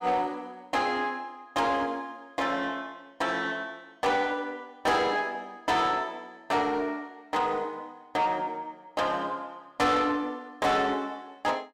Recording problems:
distorted audio; soft clipping, signal-to-distortion ratio 10 dB

